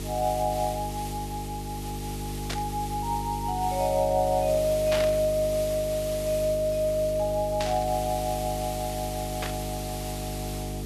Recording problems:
mains hum; 50 Hz, harmonics up to 450 Hz, SNR 8 dB
background hiss; SNR 11 dB
burst of static; 4 times, first at 2.5 s; peak 0 dB vs average level

